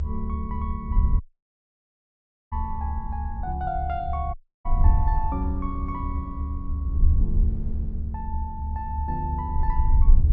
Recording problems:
low-pass filter; nothing above 8 kHz
rumble; below 74 Hz, strongest tone 72 Hz, SNR -1 dB
wind on the microphone; below 64 Hz, SNR -4 dB
dropout; at 1 s for 1.5 s and at 4.5 s

